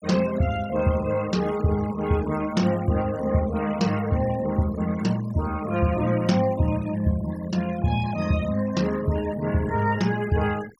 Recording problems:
denoising artefacts; signal-to-artefact ratio 18 dB

